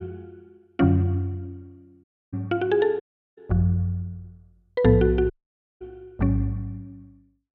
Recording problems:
dropout; at 2 s, at 3 s and at 5.5 s for 0.5 s

